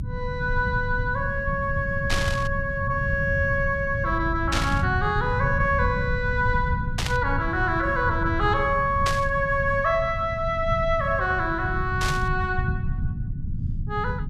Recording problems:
rumble; below 140 Hz, SNR 5 dB
burst of static; 5 times, first at 2 s; peak +1 dB vs average level

